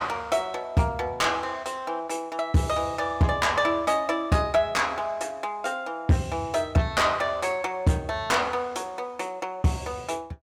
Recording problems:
distortion; soft clipping, signal-to-distortion ratio 10 dB

